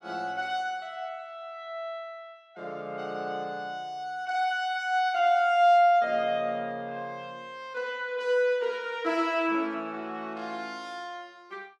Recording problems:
none

